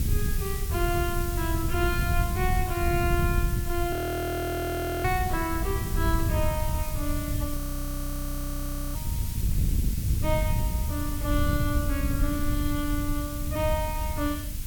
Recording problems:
hiss; slope +3 dB per octave, SNR 7 dB
wind noise; below 110 Hz, SNR -1 dB
frozen audio; at 4 s for 1 s and at 7.5 s for 1.5 s

